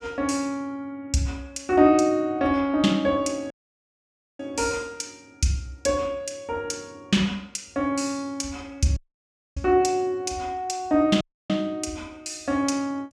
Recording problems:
audio cutting out; at 3.5 s for 1 s, at 9 s for 0.5 s and at 11 s

